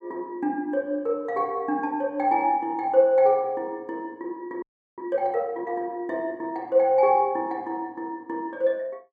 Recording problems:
audio freezing; at 4.5 s

